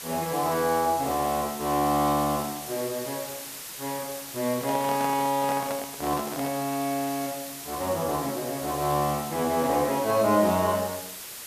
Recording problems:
background hiss; slope 0 dB per octave, SNR 10 dB
handling noise; from 4.5 to 6.5 s; peak -4 dB vs average level

